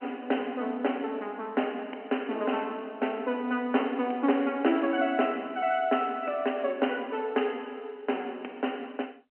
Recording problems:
phone line; 220 Hz to 3.1 kHz, G.711

